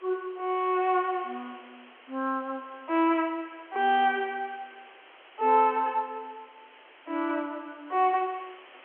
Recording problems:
phone line; 280 Hz to 3.3 kHz, G.711
hiss; SNR 24 dB

